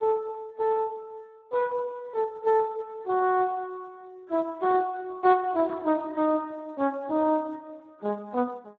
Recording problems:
lossy compression; AAC, then Speex, log-spectral distance 2 dB

